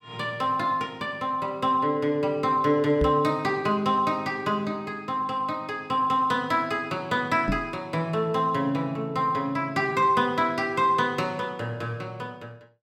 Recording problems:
microphone thump; at 3 s and at 7.5 s; peak +1 dB vs average level

